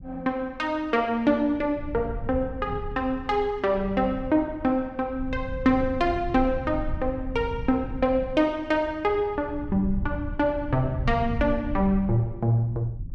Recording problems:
low-frequency rumble; below 100 Hz, SNR 11 dB

